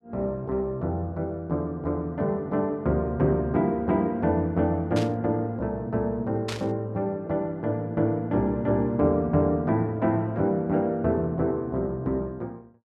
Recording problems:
burst of static; at 5 s and at 6.5 s; peak -4 dB vs average level

